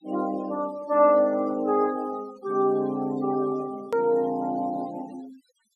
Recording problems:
denoising artefacts; signal-to-artefact ratio 24 dB
click at an edit; at 4 s

